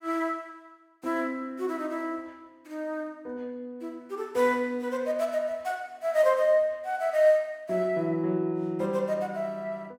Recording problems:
none

